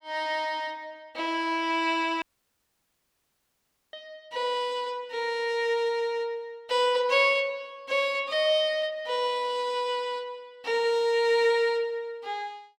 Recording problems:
audio cutting out; at 2 s for 1.5 s

